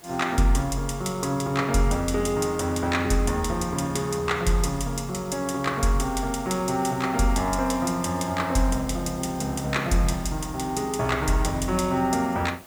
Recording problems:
hiss; slope -4 dB per octave, SNR 22 dB

